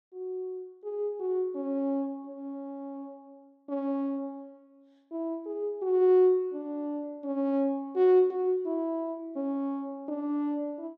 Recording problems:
none

